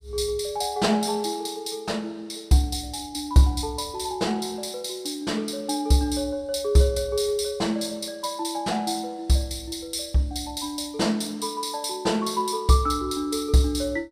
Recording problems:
none

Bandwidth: 15.5 kHz